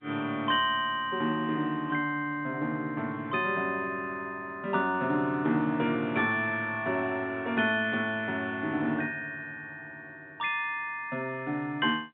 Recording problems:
phone line; 130 Hz to 3.9 kHz, G.711

